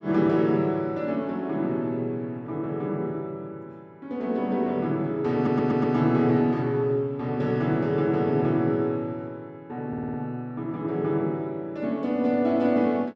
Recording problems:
audio stuttering; at 5.5 s and at 10 s

